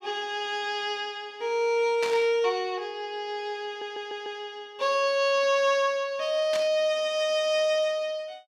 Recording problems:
burst of static; at 2 s and at 6.5 s; peak -3 dB vs average level
audio stuttering; at 3.5 s

